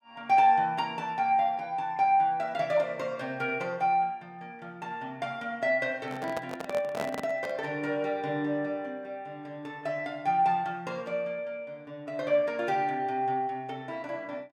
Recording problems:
handling noise; from 6 to 7.5 s; peak -1 dB vs average level

